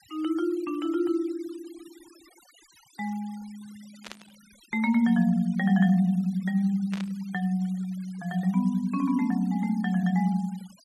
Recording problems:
denoising artefacts; signal-to-artefact ratio 26 dB
burst of static; at 4 s and at 7 s; peak -9 dB vs average level

